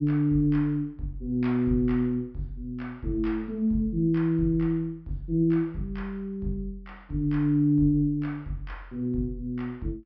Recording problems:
treble missing; nothing above 5.5 kHz

